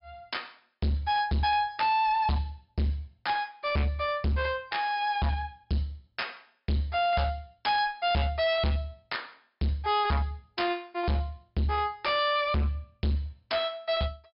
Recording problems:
treble cut off; nothing above 5.5 kHz
distorted audio; hard clipping, signal-to-distortion ratio 6 dB

